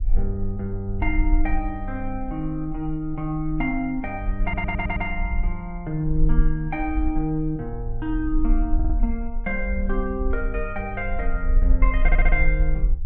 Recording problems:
low-frequency rumble; below 42 Hz, strongest tone 28 Hz, SNR 1 dB
audio stuttering; at 4.5 s, at 9 s and at 12 s

